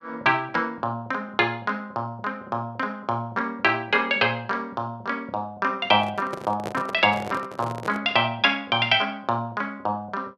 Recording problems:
handling noise; from 6 to 8 s; peak -3 dB vs average level

